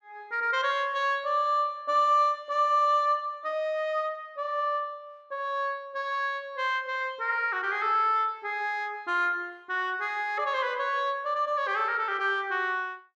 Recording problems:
none

